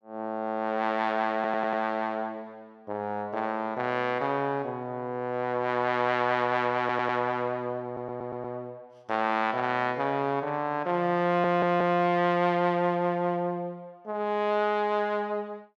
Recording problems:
stutter; 4 times, first at 1.5 s

